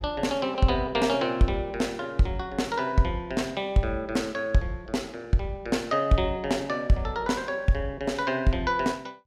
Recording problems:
none

